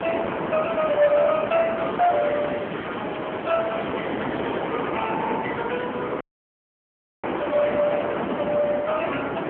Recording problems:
phone line; 240 Hz to 3.3 kHz, AMR-NB
distorted audio; soft clipping, signal-to-distortion ratio 13 dB
wind noise; below 1.1 kHz, SNR 5 dB
crackle; from 2 to 4.5 s; loose cable, SNR 18 dB
audio cutting out; at 6 s for 1 s

